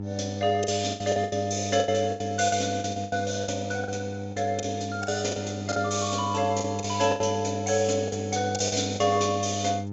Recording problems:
low-pass filter; nothing above 7.6 kHz
electrical hum; 50 Hz, harmonics up to 900 Hz, SNR 8 dB
lost packets; 12% of the sound replaced, filled with the last packet

